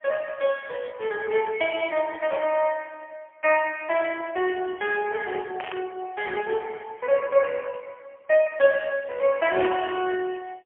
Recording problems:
telephone audio; 320 Hz to 3.3 kHz, AMR-NB, then MP3
static burst; at 5.5 s and at 9.5 s; peak -5 dB vs average level

